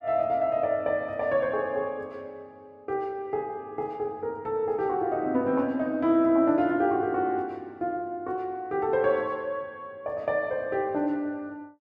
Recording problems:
none

